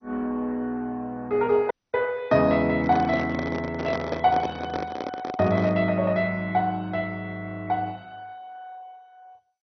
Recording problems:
codec artefacts; MP2, log-spectral distance 3 dB, nothing above 5.2 kHz
audio cutting out; at 1.5 s
microphone handling noise; from 3 to 6 s; peak 0 dB vs average level

